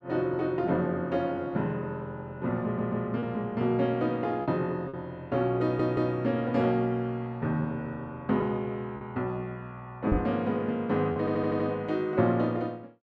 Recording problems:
lost packets; 2% of the sound replaced, filled with repeated pitch periods
stutter; at 2.5 s, at 5.5 s and at 11 s
knock on the microphone; at 10 s; peak +6 dB vs average level

